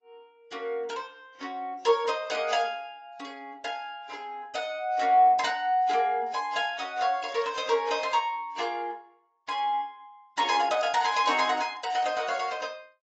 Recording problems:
lossy compression; AAC, log-spectral distance 3 dB, nothing above 7.6 kHz

